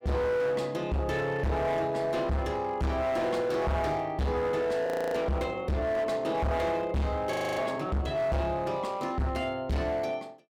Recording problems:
distortion; hard clipping, signal-to-distortion ratio 6 dB
audio freezing; at 5 s and at 7.5 s

